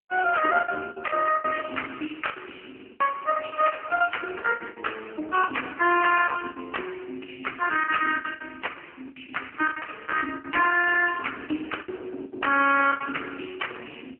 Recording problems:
phone line; 240 Hz to 3 kHz, AMR-NB
distortion; hard clipping, uneven, signal-to-distortion ratio 9 dB
lost packets; 14% of the sound replaced, filled with the last packet

